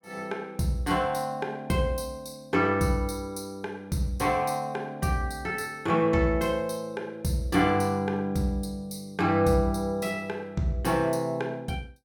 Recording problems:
none

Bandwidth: 18 kHz